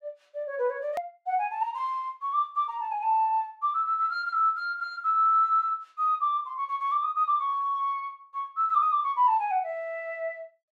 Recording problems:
click at an edit; at 1 s

